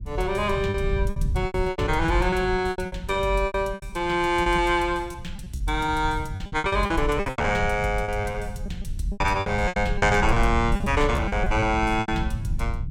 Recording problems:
rumble; below 110 Hz, SNR 8 dB
packet loss; 15% of the sound replaced, filled with repeated pitch periods

